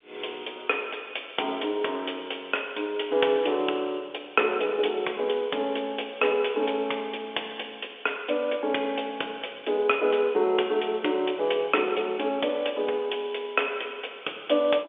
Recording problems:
telephone audio; 320 Hz to 3.5 kHz, G.711

